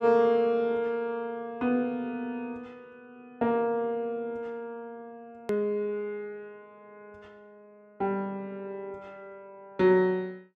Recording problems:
click at an edit; at 5.5 s

